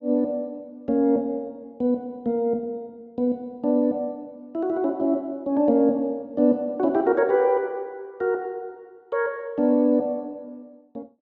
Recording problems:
none

